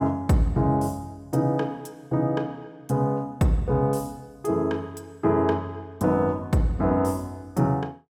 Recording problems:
none

